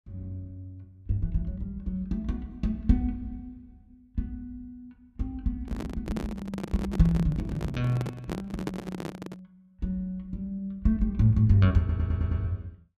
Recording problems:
microphone handling noise; from 5.5 to 9.5 s; peak +2 dB vs average level
audio stuttering; at 12 s

